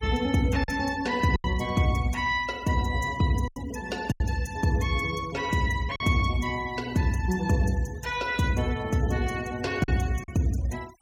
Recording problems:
noise reduction artefacts; signal-to-artefact ratio 19 dB
packet loss; 4% of the sound replaced, filled with silence

